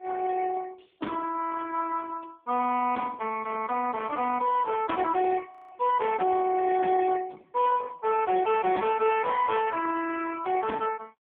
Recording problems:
phone line; 280 Hz to 3.4 kHz, AMR-NB
distorted audio; hard clipping, uneven, signal-to-distortion ratio 11 dB
audio freezing; at 5.5 s

